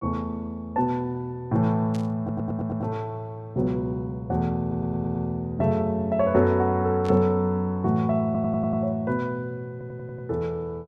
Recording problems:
static burst; at 2 s and at 7 s; peak -13 dB vs average level
audio stuttering; 4 times, first at 2 s

